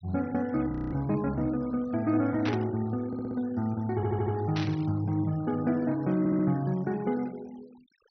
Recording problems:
low-pass filter; nothing above 6 kHz
noise reduction artefacts; signal-to-artefact ratio 25 dB
frozen audio; at 0.5 s
static burst; at 2.5 s and at 4.5 s; peak -2 dB vs average level
stutter; at 3 s, at 4 s and at 6 s

